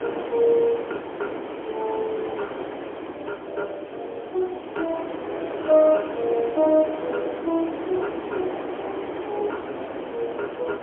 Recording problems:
telephone audio; 280 Hz to 2 kHz, AMR-NB, then MP3
hiss; SNR 30 dB
wind on the microphone; below 870 Hz, SNR 7 dB

